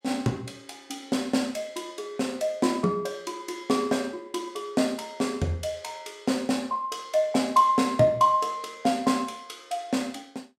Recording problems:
none

